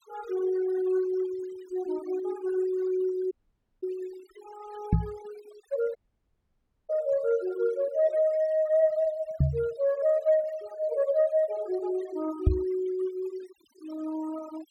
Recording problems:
noise reduction artefacts; signal-to-artefact ratio 20 dB
audio cutting out; at 3.5 s for 0.5 s and at 6 s for 1 s
microphone thump; at 5 s, at 9.5 s and at 12 s; peak +9 dB vs average level

